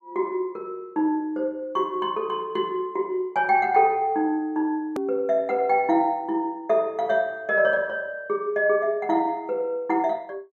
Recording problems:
click at an edit; at 5 s

